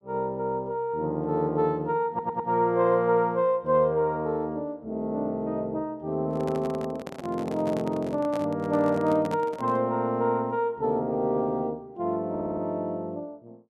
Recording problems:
stutter; at 2 s and at 12 s
microphone handling noise; from 6.5 to 10 s; peak -6 dB vs average level

